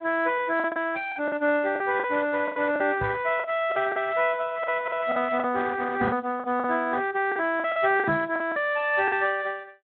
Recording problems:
treble missing; nothing above 4 kHz
lossy codec; Speex, log-spectral distance 4 dB
lost packets; 11% of the sound replaced, filled with the last packet
microphone thump; at 3 s, at 6 s and at 8 s; peak -1 dB vs average level

